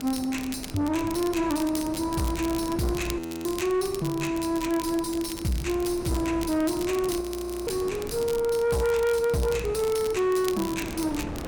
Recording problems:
distorted audio; soft clipping, signal-to-distortion ratio 10 dB
wind on the microphone; below 530 Hz, SNR 13 dB
crackling; vinyl, SNR 14 dB
audio freezing; at 3 s and at 7 s

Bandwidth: 18 kHz